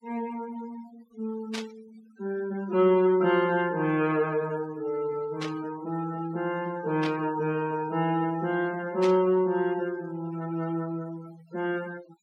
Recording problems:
noise reduction artefacts; signal-to-artefact ratio 21 dB
burst of static; 4 times, first at 1.5 s; peak -4 dB vs average level

